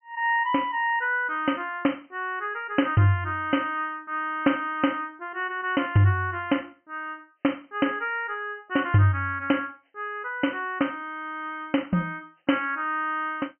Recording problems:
treble missing; nothing above 3.1 kHz

